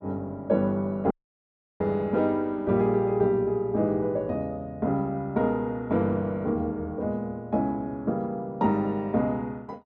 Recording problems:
audio cutting out; at 1 s for 0.5 s

